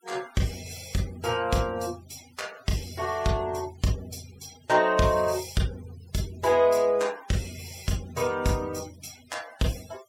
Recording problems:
noise reduction artefacts; signal-to-artefact ratio 20 dB

